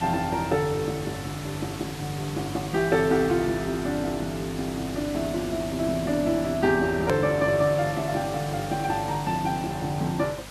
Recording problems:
hum; 50 Hz, harmonics up to 500 Hz, SNR 17 dB
background hiss; slope -2 dB per octave, SNR 13 dB
edit click; at 7 s

